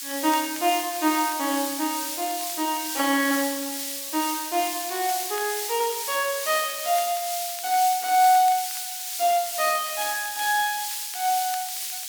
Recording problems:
background hiss; slope +7 dB per octave, SNR 4 dB
crackling; vinyl, SNR 22 dB

